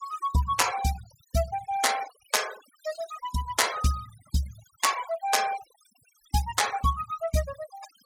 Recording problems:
noise reduction artefacts; signal-to-artefact ratio 12 dB

